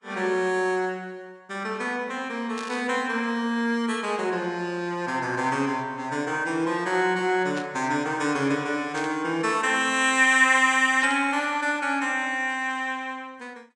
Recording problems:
codec artefacts; Vorbis, log-spectral distance 2 dB
static burst; 4 times, first at 2.5 s; peak -9 dB vs average level

